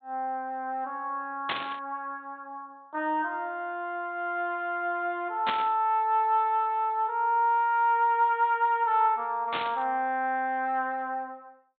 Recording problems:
treble missing; nothing above 4 kHz
static burst; at 1.5 s, at 5.5 s and at 9.5 s; peak +1 dB vs average level

